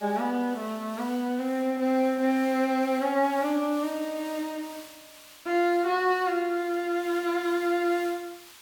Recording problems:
background hiss; SNR 20 dB

